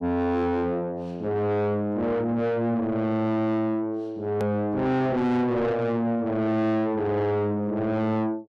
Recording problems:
distorted audio; soft clipping, signal-to-distortion ratio 7 dB
click at an edit; at 4.5 s

